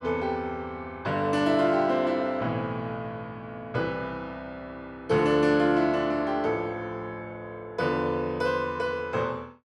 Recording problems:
none

